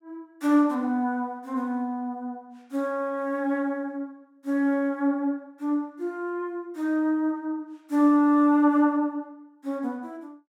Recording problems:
none

